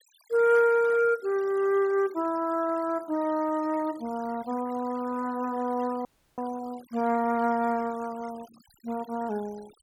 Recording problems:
denoising artefacts; signal-to-artefact ratio 23 dB
audio freezing; at 6 s

